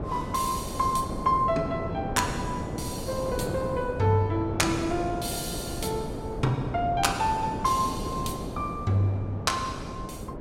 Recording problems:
wind noise; below 480 Hz, SNR 6 dB

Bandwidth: 16 kHz